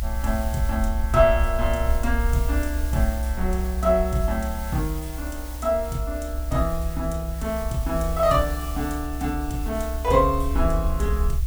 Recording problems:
hiss; slope 0 dB per octave, SNR 15 dB
low-frequency rumble; below 66 Hz, SNR 3 dB

